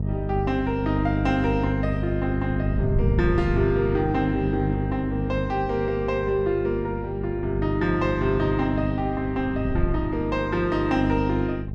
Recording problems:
electrical hum; 50 Hz, harmonics up to 650 Hz, SNR 4 dB
wind noise; below 120 Hz, SNR 11 dB

